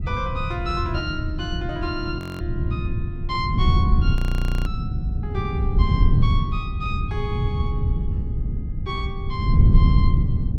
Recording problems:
wind on the microphone; below 120 Hz, SNR -7 dB
audio freezing; at 2 s and at 4 s for 0.5 s

